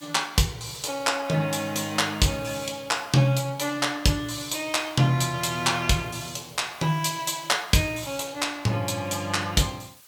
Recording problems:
background hiss; slope +2 dB per octave, SNR 25 dB

